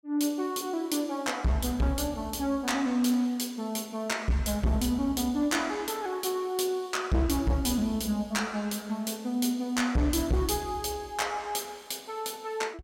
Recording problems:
distortion; hard clipping, signal-to-distortion ratio 11 dB

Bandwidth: 16 kHz